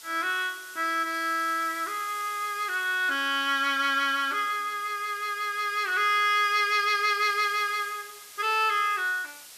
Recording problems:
hiss; slope +2 dB per octave, SNR 18 dB

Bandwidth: 14.5 kHz